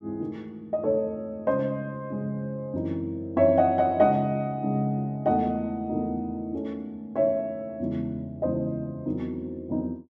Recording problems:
none

